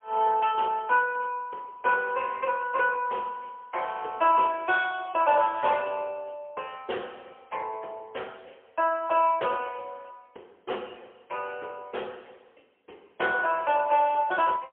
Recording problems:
phone line; 300 Hz to 3.3 kHz, AMR-NB, then MP3

